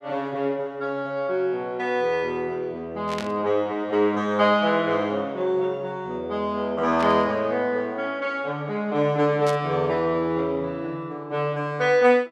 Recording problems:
static burst; at 3 s, at 7 s and at 9.5 s; peak -6 dB vs average level

